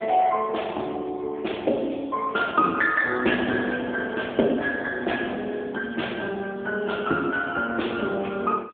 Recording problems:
telephone audio; 220 Hz to 3.5 kHz, AMR-NB

